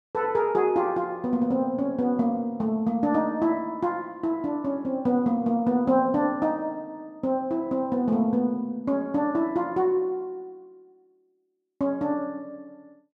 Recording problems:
none

